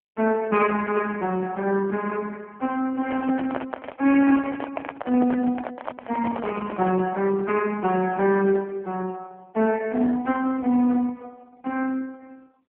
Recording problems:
phone line; 220 Hz to 3.3 kHz, AMR-NB
handling noise; from 3 to 7 s; peak -2 dB vs average level

